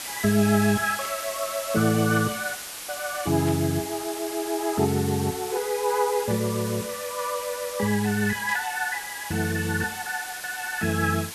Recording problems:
hiss; slope 0 dB per octave, SNR 9 dB
burst of static; at 1 s, at 3.5 s and at 8.5 s; peak -8 dB vs average level

